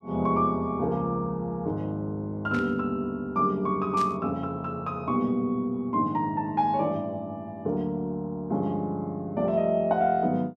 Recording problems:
burst of static; at 2.5 s and at 4 s; peak -8 dB vs average level

